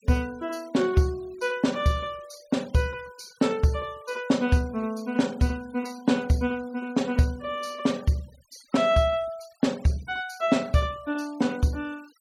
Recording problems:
noise reduction artefacts; signal-to-artefact ratio 24 dB

